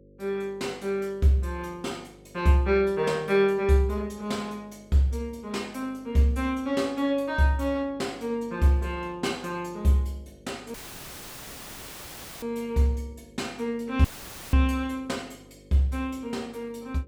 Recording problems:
electrical hum; 50 Hz, harmonics up to 550 Hz, SNR 26 dB
dropout; at 11 s for 1.5 s and at 14 s; filled with static

